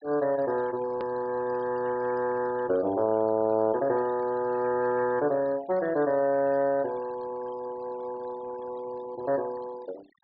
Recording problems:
treble cut off; nothing above 5.2 kHz
noise reduction artefacts; signal-to-artefact ratio 21 dB
edit click; at 1 s

